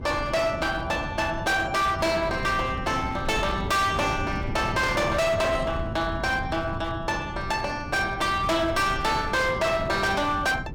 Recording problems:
distortion; hard clipping, uneven, signal-to-distortion ratio 7 dB
wind on the microphone; below 240 Hz, SNR 9 dB

